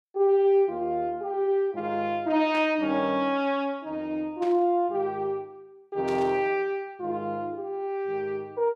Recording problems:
static burst; at 2.5 s, at 4.5 s and at 6 s; peak -11 dB vs average level

